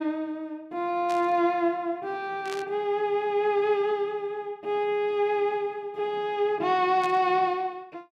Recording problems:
static burst; at 1 s, at 2.5 s and at 7 s; peak -8 dB vs average level

